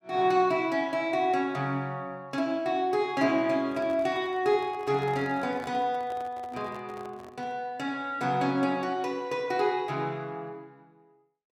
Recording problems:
microphone handling noise; from 3.5 to 7.5 s; peak -11 dB vs average level

